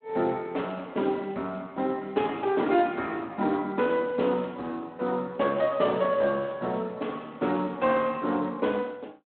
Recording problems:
phone line; 170 Hz to 3.6 kHz, Speex

